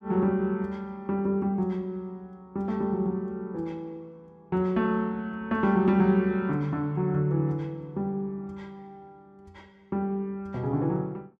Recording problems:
none

